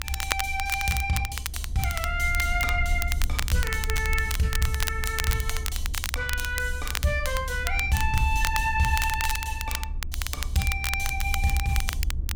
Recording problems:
low-frequency rumble; below 70 Hz, SNR 4 dB
crackling; vinyl, SNR 5 dB

